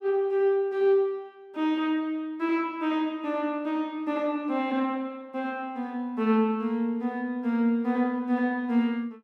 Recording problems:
none

